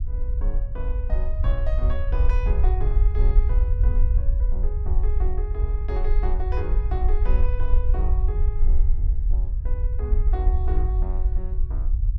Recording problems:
low-frequency rumble; below 54 Hz, SNR -12 dB

